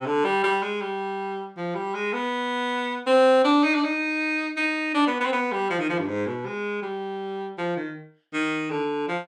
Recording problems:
none

